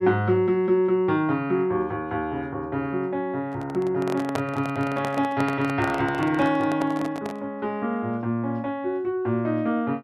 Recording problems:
handling noise; from 3.5 to 7.5 s; peak 0 dB vs average level

